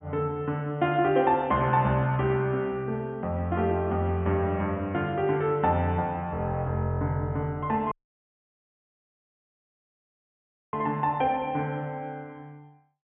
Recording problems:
treble cut off; nothing above 3.4 kHz
audio cutting out; at 8 s for 3 s

